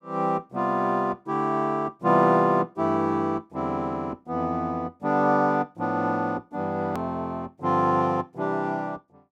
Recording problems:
click at an edit; at 7 s

